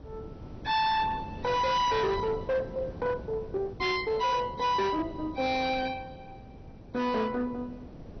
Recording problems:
lossy compression; MP2, log-spectral distance 2 dB, nothing above 5.5 kHz
distorted audio; hard clipping, signal-to-distortion ratio 11 dB
wind on the microphone; below 380 Hz, SNR 14 dB

